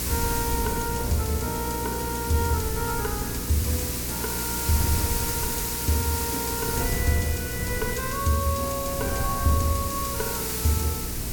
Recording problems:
hum; 60 Hz, harmonics up to 480 Hz, SNR 7 dB
background hiss; slope +1 dB per octave, SNR 1 dB
wind on the microphone; below 140 Hz, SNR 7 dB
crackling; from 3 to 4.5 s and from 5.5 to 7 s; loose cable, SNR 26 dB

